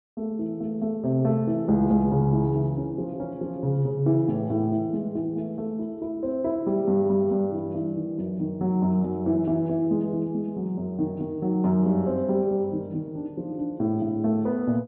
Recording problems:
low-pass filter; nothing above 4 kHz

